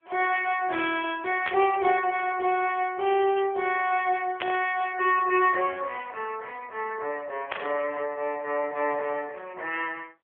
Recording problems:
phone line; 340 Hz to 3.5 kHz, AMR-NB
static burst; at 1.5 s, at 4.5 s and at 7.5 s; peak 0 dB vs average level

